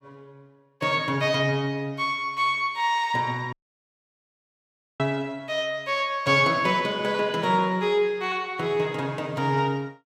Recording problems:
audio cutting out; at 3.5 s for 1.5 s

